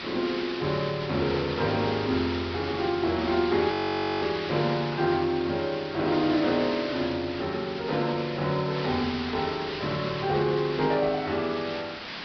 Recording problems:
low-pass filter; nothing above 5.5 kHz
background hiss; SNR 9 dB
audio freezing; at 3.5 s

